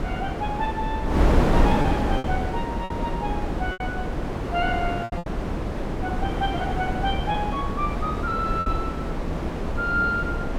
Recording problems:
wind noise; below 480 Hz, SNR -2 dB
lost packets; 5% of the sound replaced, filled with repeated pitch periods

